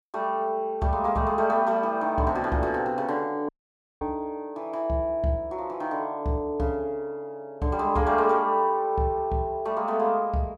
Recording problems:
audio cutting out; at 3.5 s for 0.5 s

